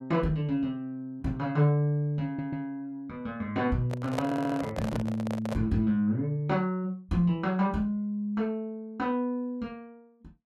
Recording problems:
stutter; at 2.5 s and at 4.5 s
handling noise; from 4 to 5.5 s; peak +2 dB vs average level

